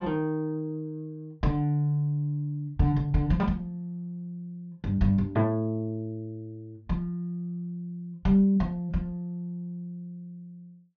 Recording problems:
treble missing; nothing above 6.6 kHz

